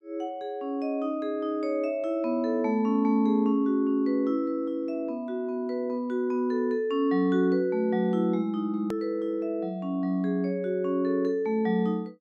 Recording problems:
hard cut with a click; at 9 s

